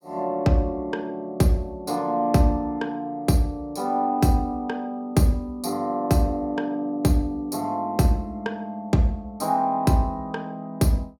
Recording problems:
none

